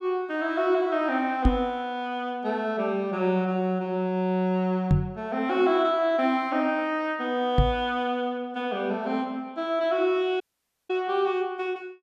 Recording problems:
knock on the microphone; at 1.5 s, at 5 s and at 7.5 s; peak +8 dB vs average level
audio cutting out; at 10 s

